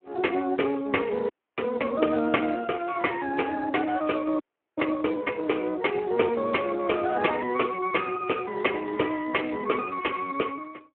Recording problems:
phone line; 220 Hz to 3.1 kHz, Speex
frozen audio; at 1.5 s and at 4.5 s

